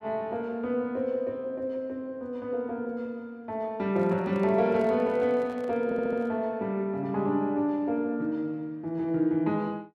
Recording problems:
microphone handling noise; from 4 to 6.5 s; peak -12 dB vs average level
audio stuttering; at 6 s

